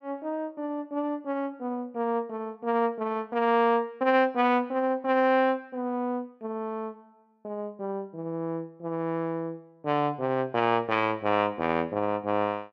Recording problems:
none

